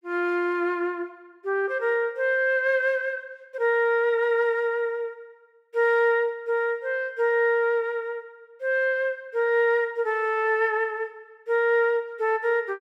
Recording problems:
none

